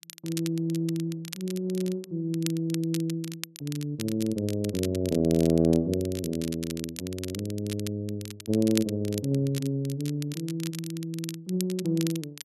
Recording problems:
crackle; vinyl, SNR 12 dB

